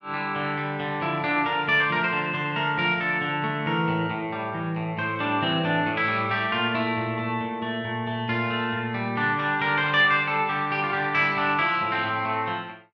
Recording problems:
none

